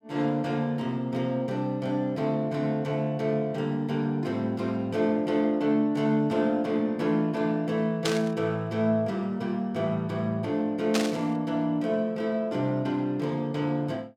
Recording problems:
static burst; at 8 s and at 11 s; peak +3 dB vs average level

